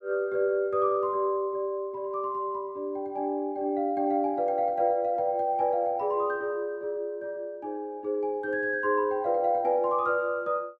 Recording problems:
none

